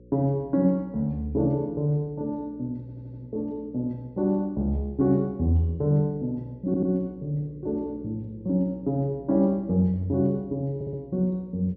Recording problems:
low-pass filter; nothing above 8 kHz
hum; 60 Hz, harmonics up to 540 Hz, SNR 23 dB
stutter; at 3 s, at 6.5 s and at 11 s

